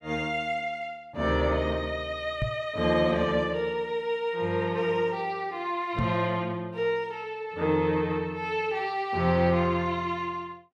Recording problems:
microphone thump; at 2.5 s and at 6 s; peak +2 dB vs average level

